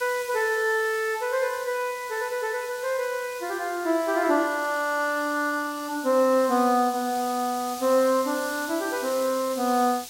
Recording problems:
hiss; SNR 14 dB

